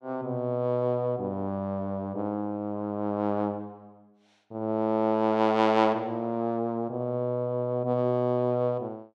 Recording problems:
none

